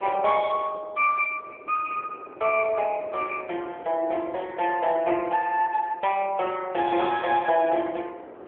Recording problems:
phone line; 240 Hz to 3.3 kHz, AMR-NB
wind on the microphone; below 700 Hz, SNR 20 dB

